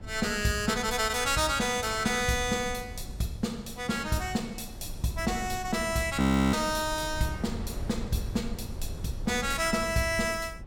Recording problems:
low-frequency rumble; below 98 Hz, SNR 14 dB
wind on the microphone; below 430 Hz, SNR 19 dB
frozen audio; at 6 s

